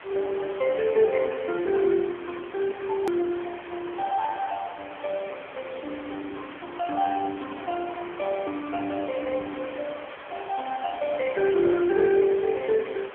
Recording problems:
phone line; 280 Hz to 3.1 kHz, AMR-NB
background hiss; SNR 15 dB
hard cut with a click; at 3 s

